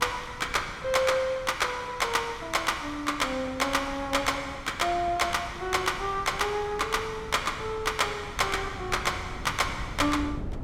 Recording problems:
wind noise; below 220 Hz, SNR 15 dB

